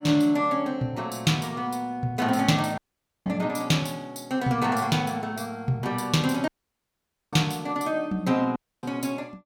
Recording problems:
dropout; at 3 s, at 6.5 s for 1 s and at 8.5 s

